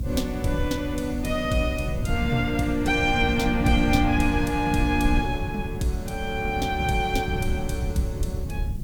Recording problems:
hiss; slope +4 dB per octave, SNR 27 dB
low-frequency rumble; below 130 Hz, SNR 5 dB

